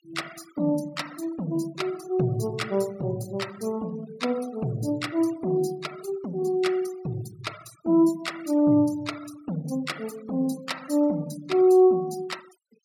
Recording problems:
noise reduction artefacts; signal-to-artefact ratio 20 dB

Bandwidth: 17 kHz